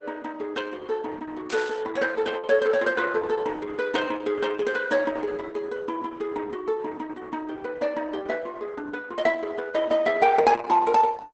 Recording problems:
codec artefacts; Opus, log-spectral distance 4 dB, nothing above 8 kHz
burst of static; at 1.5 s; peak -8 dB vs average level

